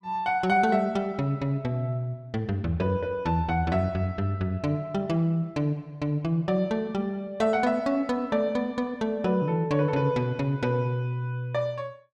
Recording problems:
none

